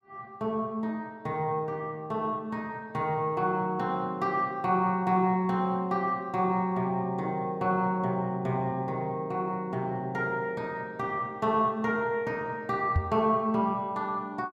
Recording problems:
knock on the microphone; at 13 s; peak +6 dB vs average level

